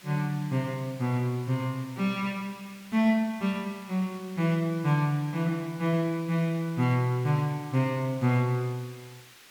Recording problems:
background hiss; SNR 22 dB

